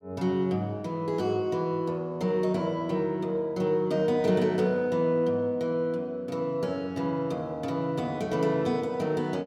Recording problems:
none

